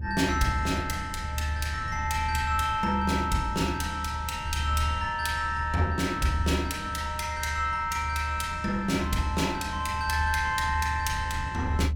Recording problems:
rumble; below 78 Hz, strongest tone 74 Hz, SNR 6 dB

